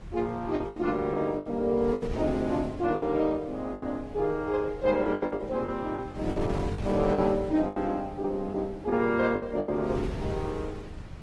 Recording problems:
lossy compression; Opus, then AAC, log-spectral distance 2 dB
wind on the microphone; below 200 Hz, SNR 12 dB
packet loss; 10% of the sound replaced, filled with the last packet

